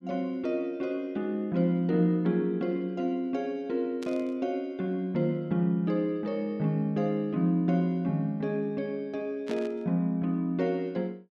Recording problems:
burst of static; at 4 s and at 9.5 s; peak -10 dB vs average level

